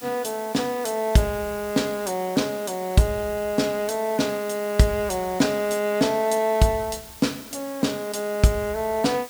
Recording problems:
hiss; slope 0 dB per octave, SNR 16 dB

